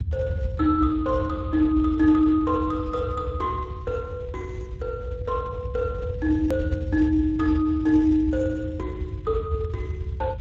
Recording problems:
codec artefacts; Speex, log-spectral distance 2 dB, nothing above 15.1 kHz
rumble; below 100 Hz, SNR 8 dB
hard cut with a click; at 6.5 s

